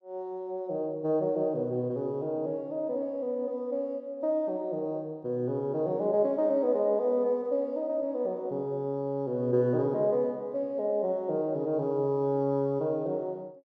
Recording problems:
none

